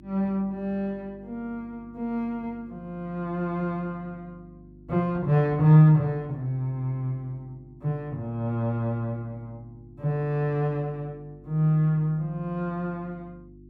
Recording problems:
hum; 50 Hz, harmonics up to 350 Hz, SNR 23 dB

